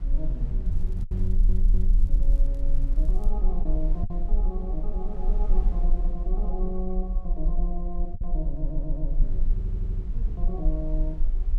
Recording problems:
low-frequency rumble; below 38 Hz, strongest tone 22 Hz, SNR -7 dB
wind on the microphone; below 130 Hz, SNR 8 dB
packet loss; 2% of the sound replaced, filled with the last packet
crackling; from 0.5 to 3.5 s; loose cable, SNR 28 dB
audio stuttering; at 1 s, at 8.5 s and at 9.5 s

